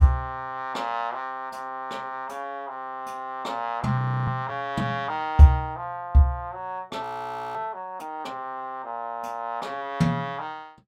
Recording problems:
audio freezing; at 4 s and at 7 s for 0.5 s

